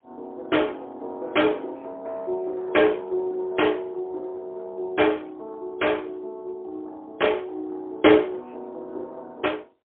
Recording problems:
phone line; 260 Hz to 3.4 kHz, AMR-NB, then MP3

